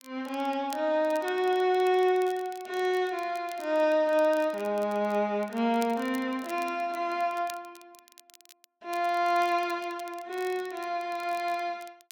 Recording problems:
crackle; vinyl, SNR 23 dB

